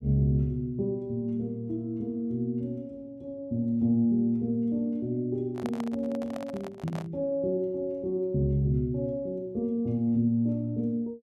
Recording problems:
microphone handling noise; from 5.5 to 7 s; peak -6 dB vs average level

